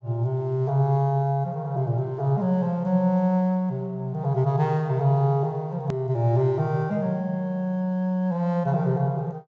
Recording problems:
treble cut off; nothing above 8 kHz
click at an edit; at 6 s

